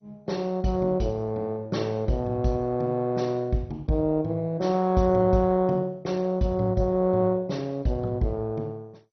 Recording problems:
lossy codec; MP2, log-spectral distance 2 dB, nothing above 6 kHz

